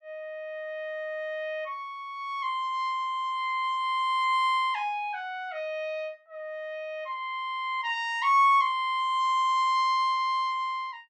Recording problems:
none

